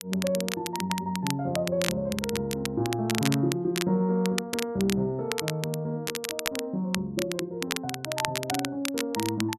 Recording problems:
crackle; vinyl, SNR 5 dB

